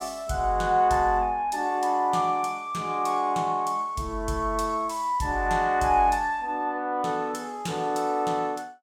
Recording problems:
none

